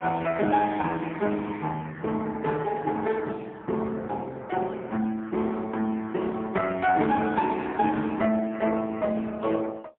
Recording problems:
telephone audio; 170 Hz to 3.3 kHz, AMR-NB, then MP3

